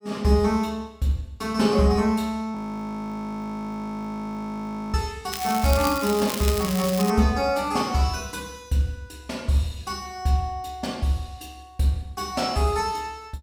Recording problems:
audio freezing; at 2.5 s for 2.5 s
crackling; from 5.5 to 7 s; loose cable, SNR 7 dB

